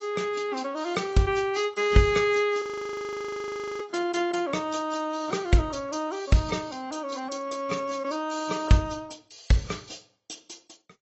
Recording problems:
lossy compression; AAC, log-spectral distance 6 dB, nothing above 7.6 kHz
frozen audio; at 2.5 s for 1 s

